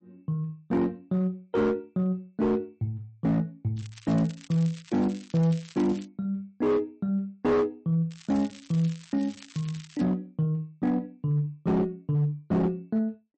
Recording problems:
lossy compression; MP3, log-spectral distance 3 dB, nothing above 8.2 kHz
distortion; hard clipping, signal-to-distortion ratio 11 dB
crackling; from 4 to 6 s and from 8 to 10 s; loose cable, SNR 21 dB

